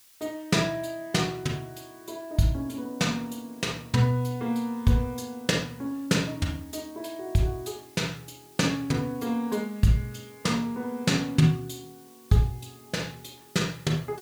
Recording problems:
hiss; slope +3 dB per octave, SNR 25 dB

